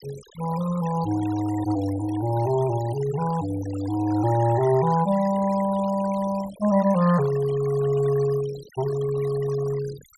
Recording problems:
denoising artefacts; signal-to-artefact ratio 17 dB

